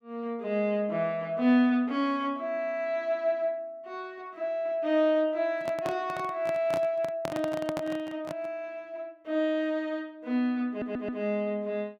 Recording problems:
handling noise; from 5.5 to 8.5 s; peak -1 dB vs average level
audio stuttering; at 11 s

